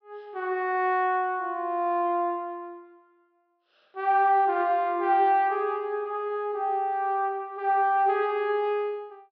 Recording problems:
treble missing; nothing above 5.5 kHz

